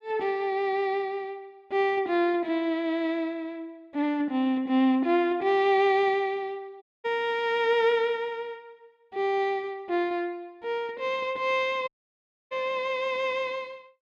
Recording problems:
audio cutting out; at 7 s and at 12 s for 0.5 s

